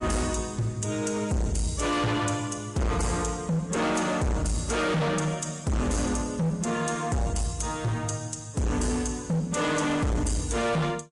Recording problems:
lossy codec; MP3, log-spectral distance 3 dB
distorted audio; hard clipping, uneven, signal-to-distortion ratio 6 dB

